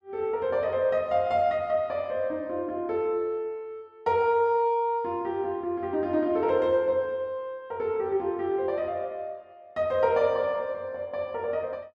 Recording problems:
none

